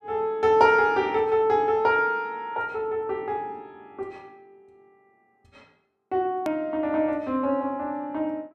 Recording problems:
click at an edit; at 6.5 s

